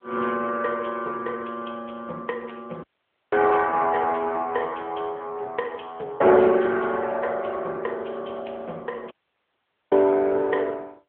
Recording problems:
telephone audio; 300 Hz to 3.3 kHz, AMR-NB
audio cutting out; at 3 s and at 9 s for 1 s

